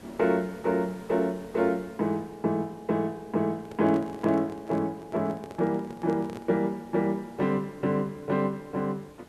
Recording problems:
background hiss; slope -6 dB per octave, SNR 23 dB
handling noise; from 3.5 to 6.5 s; peak -8 dB vs average level

